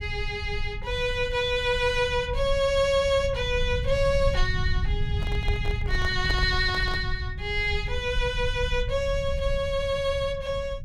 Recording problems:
rumble; below 88 Hz, SNR 6 dB
microphone handling noise; from 5 to 7 s; peak -5 dB vs average level

